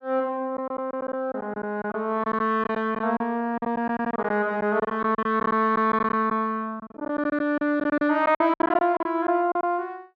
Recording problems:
packet loss; 13% of the sound replaced, filled with silence

